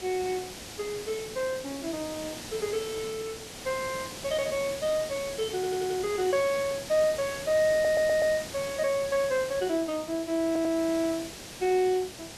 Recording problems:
hiss; SNR 10 dB
audio stuttering; at 5.5 s, at 7.5 s and at 10 s

